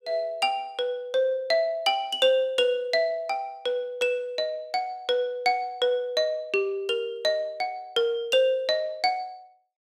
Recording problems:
none

